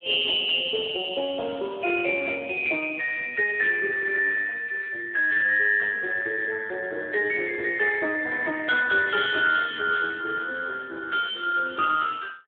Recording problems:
phone line; 320 Hz to 3.7 kHz, Speex

